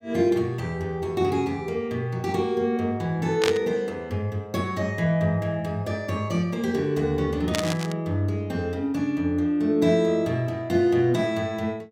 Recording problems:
burst of static; at 3.5 s and at 7.5 s; peak +3 dB vs average level

